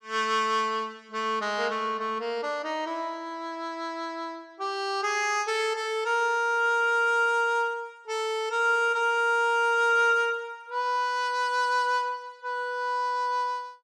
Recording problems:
none

